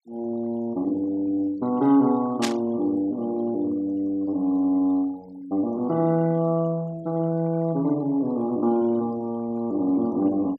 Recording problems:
noise reduction artefacts; signal-to-artefact ratio 25 dB
burst of static; at 2.5 s; peak +2 dB vs average level

